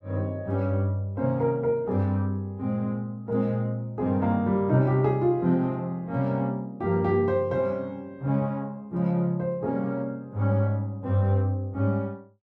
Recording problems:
none

